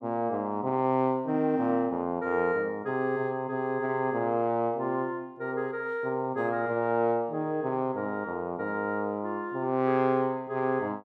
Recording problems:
none

